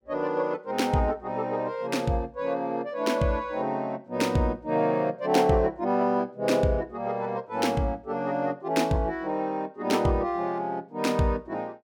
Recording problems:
none

